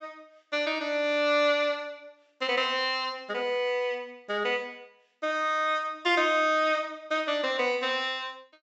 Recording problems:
low-pass filter; nothing above 8 kHz

